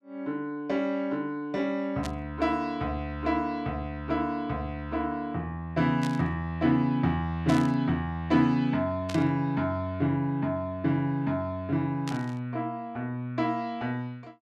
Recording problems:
static burst; 5 times, first at 2 s; peak -5 dB vs average level

